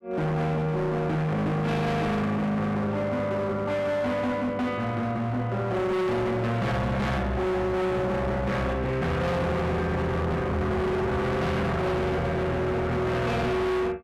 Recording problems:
distortion; hard clipping, signal-to-distortion ratio 6 dB

